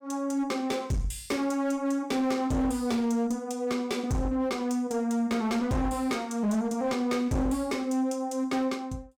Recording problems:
distorted audio; hard clipping, signal-to-distortion ratio 10 dB

